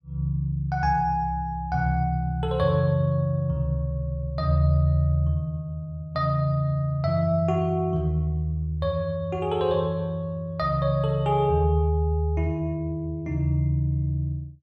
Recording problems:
none

